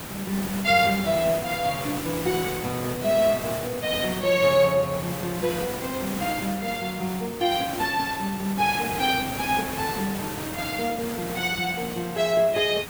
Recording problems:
hiss; slope -4 dB per octave, SNR 8 dB

